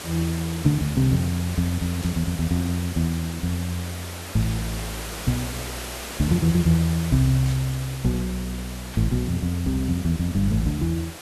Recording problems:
hiss; slope -3 dB per octave, SNR 11 dB
static burst; 4 times, first at 2 s; peak -12 dB vs average level

